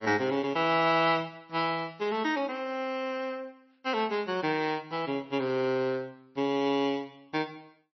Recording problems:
lossy codec; MP3, log-spectral distance 3 dB, nothing above 5.8 kHz

